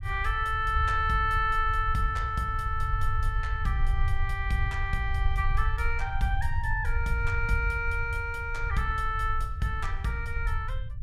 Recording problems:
rumble; below 74 Hz, SNR 3 dB

